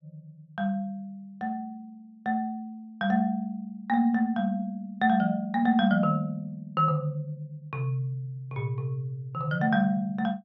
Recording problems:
none

